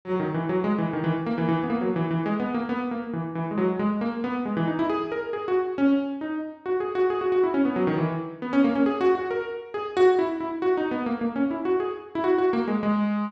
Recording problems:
none

